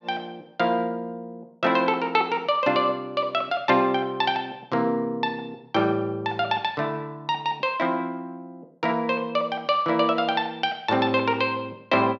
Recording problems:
none

